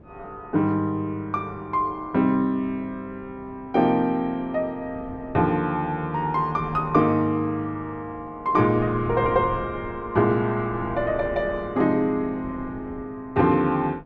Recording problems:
wind noise; below 360 Hz, SNR 18 dB

